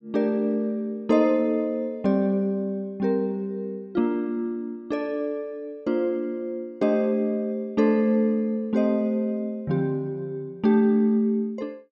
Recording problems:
none

